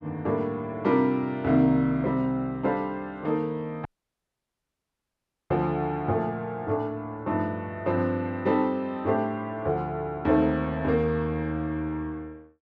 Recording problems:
dropout; at 4 s for 1.5 s

